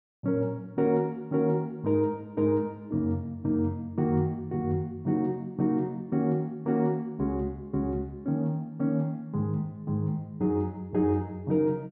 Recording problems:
none

